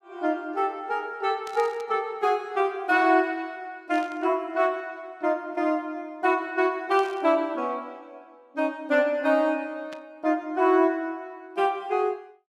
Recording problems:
static burst; 4 times, first at 1.5 s; peak -13 dB vs average level

